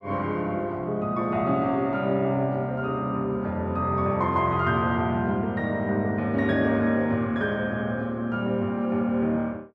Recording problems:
none

